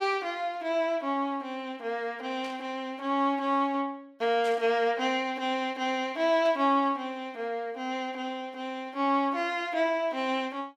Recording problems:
static burst; at 2.5 s, at 4.5 s and at 6.5 s; peak -12 dB vs average level

